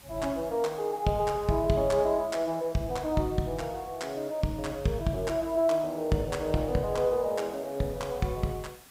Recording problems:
background hiss; slope -2 dB per octave, SNR 23 dB

